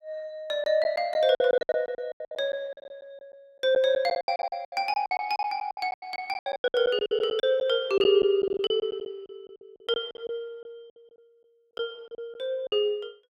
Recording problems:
lost packets; 17% of the sound replaced, filled with silence

